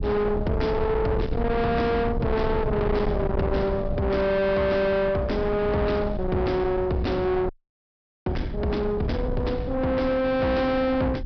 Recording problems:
low-pass filter; nothing above 5.5 kHz
distorted audio; soft clipping, signal-to-distortion ratio 7 dB
rumble; below 410 Hz, SNR 6 dB
audio freezing; at 7.5 s for 1 s

